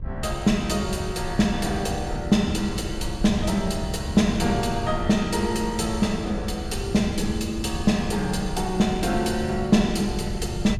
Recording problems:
hum; 50 Hz, harmonics up to 1.3 kHz, SNR 25 dB
wind noise; below 110 Hz, SNR 9 dB

